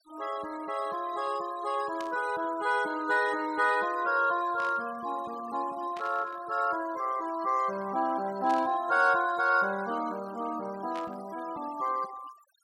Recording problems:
denoising artefacts; signal-to-artefact ratio 19 dB
burst of static; 5 times, first at 2 s; peak -11 dB vs average level

